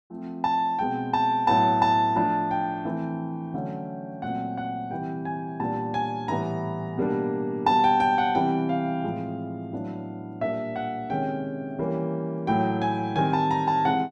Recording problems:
none

